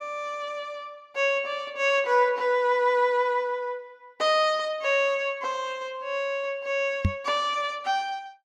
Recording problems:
knock on the microphone; at 7 s; peak +5 dB vs average level

